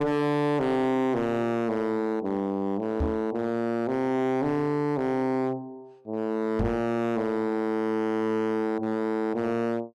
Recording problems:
distortion; hard clipping, signal-to-distortion ratio 8 dB
microphone bump; at 3 s and at 6.5 s; peak +3 dB vs average level

